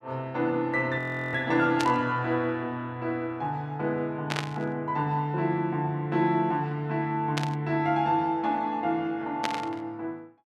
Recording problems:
frozen audio; at 1 s
burst of static; 4 times, first at 2 s; peak +2 dB vs average level

